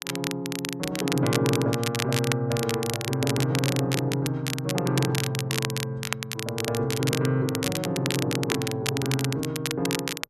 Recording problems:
crackle; vinyl, SNR 4 dB

